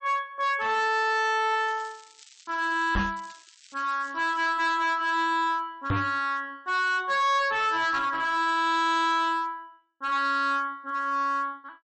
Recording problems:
lossy compression; MP3, log-spectral distance 4 dB, nothing above 8.2 kHz
distortion; hard clipping, uneven, signal-to-distortion ratio 10 dB
crackling; from 1.5 to 4.5 s and at 8.5 s; loose cable, SNR 25 dB
microphone thump; at 3 s and at 6 s; peak +2 dB vs average level

